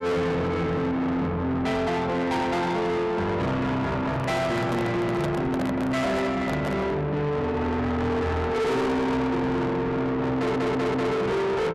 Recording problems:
distortion; soft clipping, signal-to-distortion ratio 6 dB
microphone handling noise; from 4 to 7 s; peak +1 dB vs average level
stutter; at 10 s

